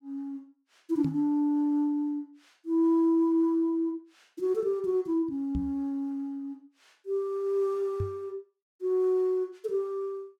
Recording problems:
microphone thump; at 1 s, at 5.5 s and at 8 s; peak +1 dB vs average level

